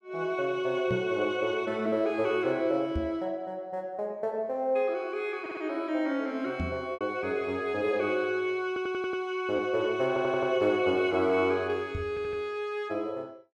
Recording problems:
lost packets; 1% of the sound replaced, filled with repeated pitch periods
microphone thump; 4 times, first at 1 s; peak 0 dB vs average level
audio stuttering; 4 times, first at 5.5 s

